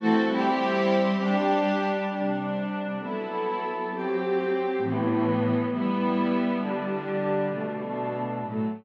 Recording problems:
none

